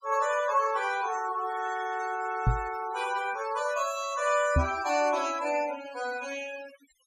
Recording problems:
noise reduction artefacts; signal-to-artefact ratio 13 dB
microphone bump; at 2.5 s and at 4.5 s; peak +7 dB vs average level

